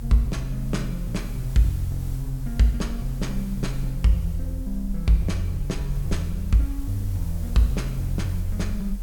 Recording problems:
hiss; SNR 20 dB
low-frequency rumble; below 42 Hz, strongest tone 42 Hz, SNR 8 dB
wind on the microphone; below 86 Hz, SNR 17 dB

